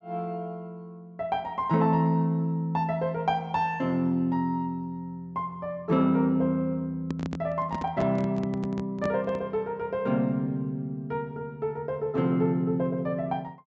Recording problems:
treble missing; nothing above 8 kHz
microphone handling noise; from 7 to 9.5 s; peak -2 dB vs average level

